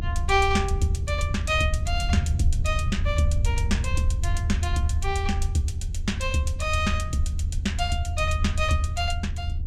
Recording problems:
rumble; below 82 Hz, SNR 0 dB

